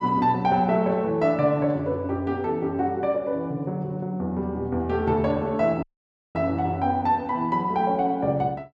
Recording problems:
audio cutting out; at 6 s for 0.5 s

